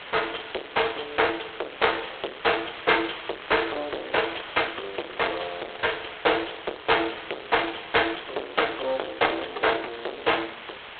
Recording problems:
telephone audio; 340 Hz to 4 kHz, G.726
distorted audio; soft clipping, signal-to-distortion ratio 8 dB
hiss; SNR 12 dB

